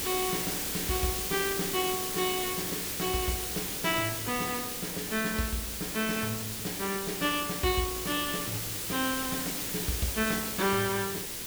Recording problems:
hiss; SNR 0 dB

